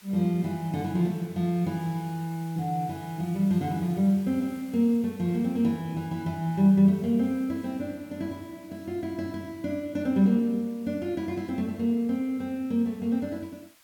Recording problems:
hiss; SNR 26 dB

